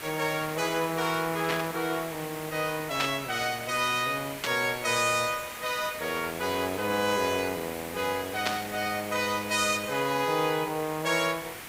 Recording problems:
hiss; SNR 11 dB
burst of static; 4 times, first at 1.5 s; peak +3 dB vs average level

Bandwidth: 15.5 kHz